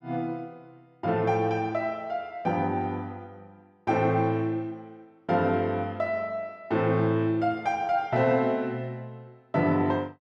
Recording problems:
none

